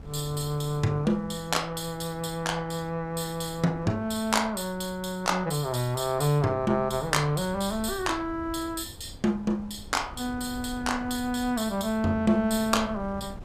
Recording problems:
wind on the microphone; below 210 Hz, SNR 18 dB

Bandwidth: 14.5 kHz